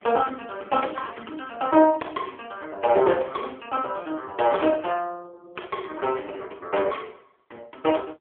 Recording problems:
telephone audio; 320 Hz to 3.3 kHz, AMR-NB

